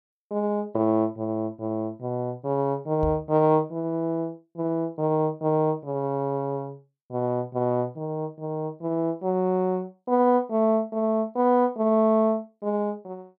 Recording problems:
microphone bump; at 3 s; peak -3 dB vs average level

